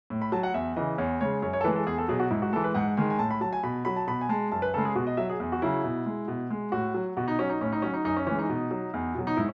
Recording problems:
none

